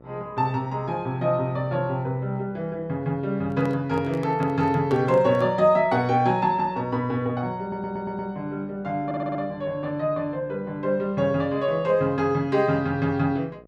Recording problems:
electrical hum; 60 Hz, harmonics up to 1.4 kHz, SNR 25 dB
microphone handling noise; from 3.5 to 5.5 s; peak -8 dB vs average level
audio stuttering; at 7.5 s and at 9 s

